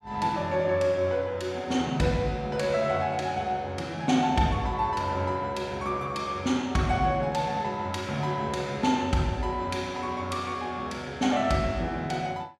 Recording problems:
none

